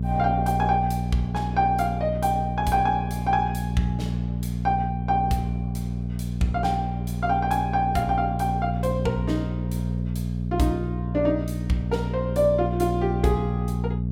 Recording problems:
hum; 60 Hz, harmonics up to 420 Hz, SNR 2 dB

